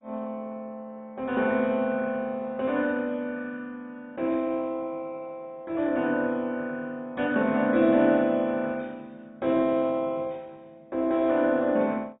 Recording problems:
treble missing; nothing above 3.4 kHz
codec artefacts; MP2, log-spectral distance 2 dB

